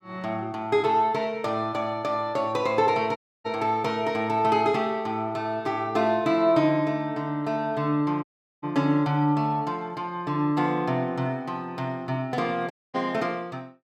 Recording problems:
audio cutting out; at 3 s, at 8 s and at 13 s

